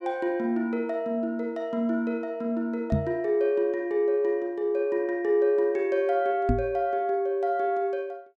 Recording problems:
knock on the microphone; at 3 s and at 6.5 s; peak +5 dB vs average level

